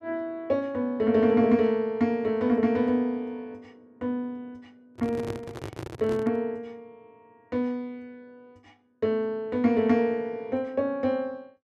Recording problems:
microphone handling noise; from 5 to 6.5 s; peak -4 dB vs average level

